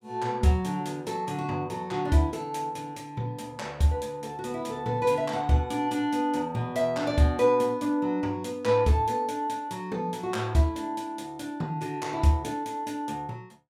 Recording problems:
none

